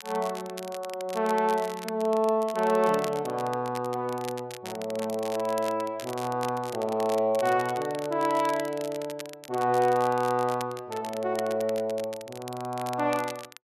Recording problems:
crackle; vinyl, SNR 16 dB

